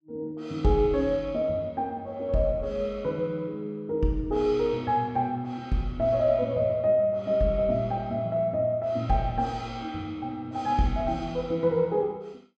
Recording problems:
none

